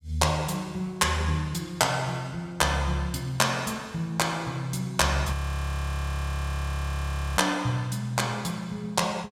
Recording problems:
audio freezing; at 5.5 s for 2 s

